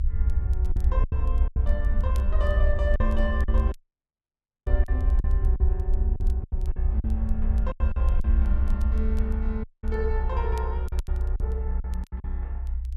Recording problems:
rumble; below 64 Hz, SNR -9 dB
crackling; vinyl, SNR 23 dB
lost packets; 9% of the sound replaced, filled with silence
audio cutting out; at 4 s for 1 s and at 9.5 s

